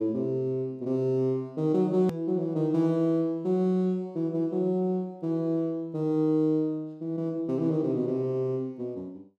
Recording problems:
click at an edit; at 2 s

